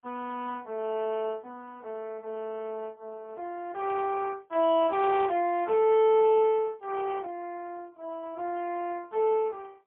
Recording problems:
phone line; 260 Hz to 3.5 kHz, AMR-NB, then MP3

